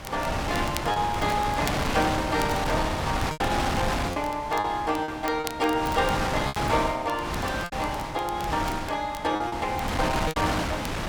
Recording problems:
wind on the microphone; below 1.8 kHz, SNR 2 dB
crackling; vinyl, SNR 16 dB
lost packets; 6% of the sound replaced, filled with repeated pitch periods

